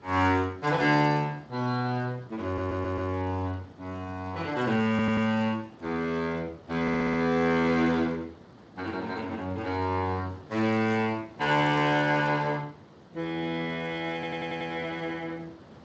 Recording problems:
lossy compression; Speex, log-spectral distance 3 dB
background hiss; SNR 23 dB
stutter; 4 times, first at 2.5 s

